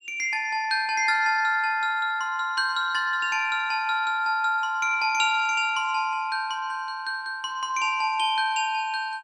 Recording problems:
none

